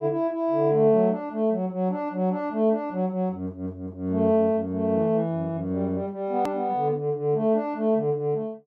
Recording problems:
click at an edit; at 6.5 s

